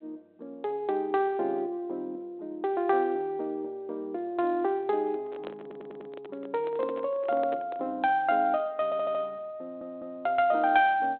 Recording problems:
telephone audio; 280 Hz to 3.9 kHz, G.726
microphone handling noise; from 5 to 8 s; peak -8 dB vs average level
stutter; at 5.5 s, at 9 s and at 9.5 s

